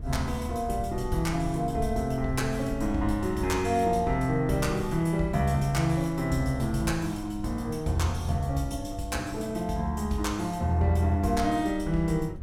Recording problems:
wind on the microphone; below 100 Hz, SNR 13 dB

